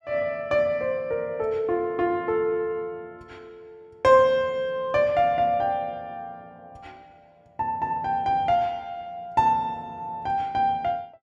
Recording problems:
none

